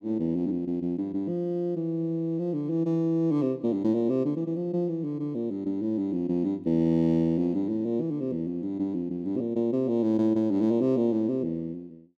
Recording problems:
none

